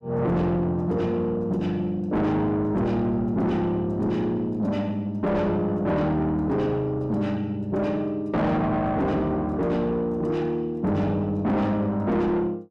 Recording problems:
distortion; soft clipping, signal-to-distortion ratio 7 dB

